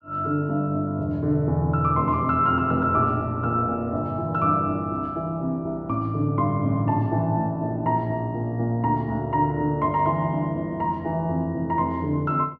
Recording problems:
none

